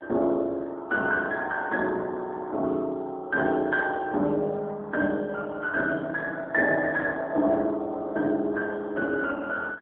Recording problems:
phone line; 240 Hz to 3 kHz, AMR-NB

